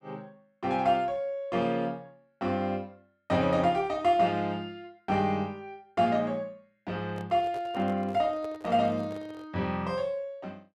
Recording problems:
microphone handling noise; from 7 to 9.5 s; peak -11 dB vs average level

